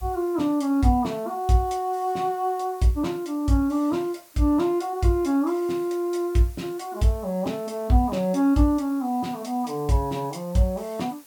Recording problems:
background hiss; slope -1 dB per octave, SNR 25 dB

